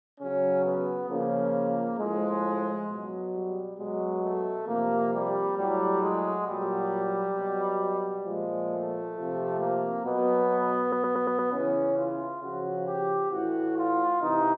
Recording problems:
audio stuttering; at 11 s

